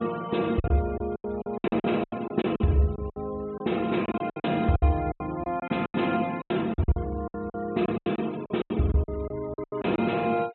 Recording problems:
treble missing; nothing above 4 kHz
noise reduction artefacts; signal-to-artefact ratio 23 dB
lost packets; 17% of the sound replaced, filled with silence

